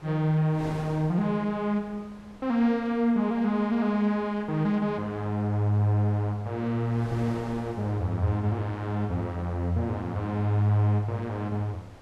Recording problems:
wind on the microphone; below 1 kHz, SNR 20 dB

